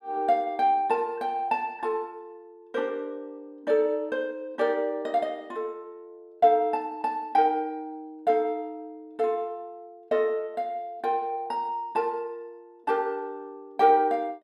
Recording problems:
none

